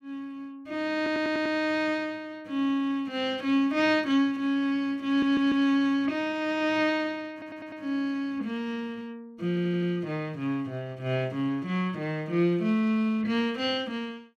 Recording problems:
stutter; 4 times, first at 1 s

